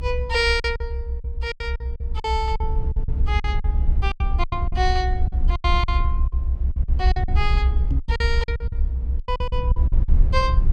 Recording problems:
rumble; below 68 Hz, SNR -3 dB
packet loss; 16% of the sound replaced, filled with silence
microphone thump; at 8 s; peak +2 dB vs average level

